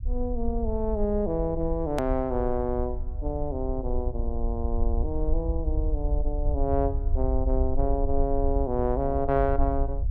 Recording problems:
low-frequency rumble; below 60 Hz, SNR 2 dB
hard cut with a click; at 2 s

